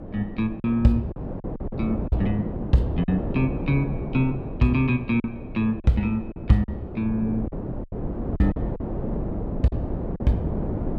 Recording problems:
wind on the microphone; below 360 Hz, SNR 6 dB
packet loss; 6% of the sound replaced, filled with silence

